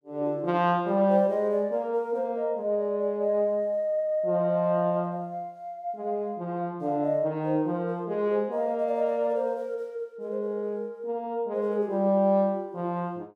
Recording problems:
none

